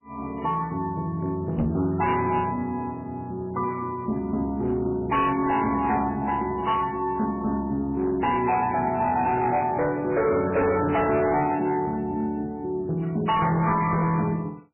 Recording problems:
codec artefacts; MP3, log-spectral distance 3 dB, nothing above 2.7 kHz
distorted audio; hard clipping, signal-to-distortion ratio 10 dB
microphone thump; at 1.5 s; peak +2 dB vs average level

